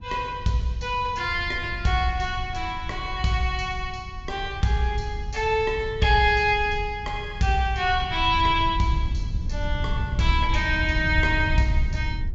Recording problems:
treble cut off; nothing above 7.7 kHz
rumble; below 90 Hz, SNR 8 dB

